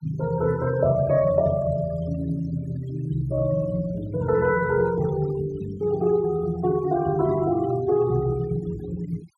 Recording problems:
denoising artefacts; signal-to-artefact ratio 19 dB

